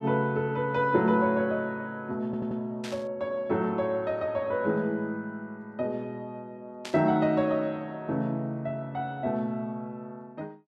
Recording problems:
audio stuttering; at 2.5 s
static burst; at 3 s and at 7 s; peak -5 dB vs average level

